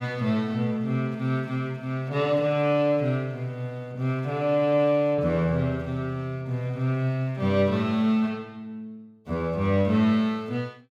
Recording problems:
none

